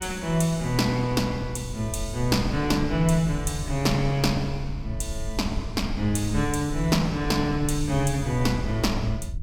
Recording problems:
low-frequency rumble; below 76 Hz, SNR 10 dB

